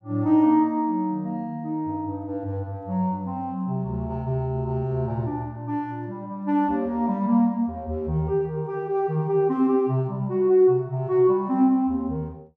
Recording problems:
none

